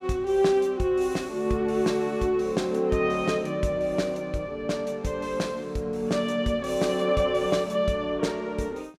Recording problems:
none

